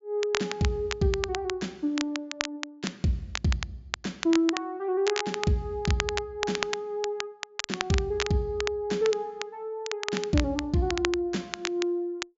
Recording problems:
low-pass filter; nothing above 7.3 kHz
crackling; vinyl, SNR 6 dB

